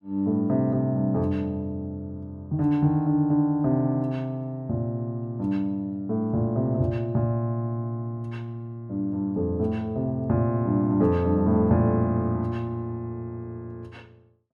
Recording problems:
none

